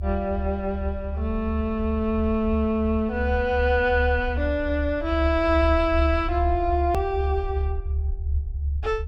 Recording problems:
rumble; below 74 Hz, strongest tone 72 Hz, SNR 4 dB
click at an edit; at 7 s

